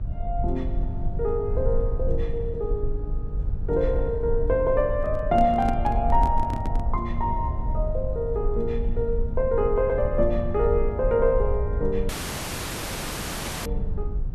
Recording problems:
hum; 50 Hz, harmonics up to 550 Hz, SNR 13 dB
rumble; below 62 Hz, SNR 4 dB
microphone handling noise; from 5 to 7 s; peak -2 dB vs average level
audio cutting out; at 12 s for 1.5 s

